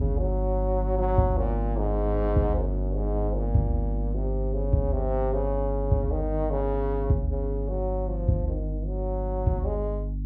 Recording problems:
hum; 50 Hz, harmonics up to 300 Hz, SNR 1 dB

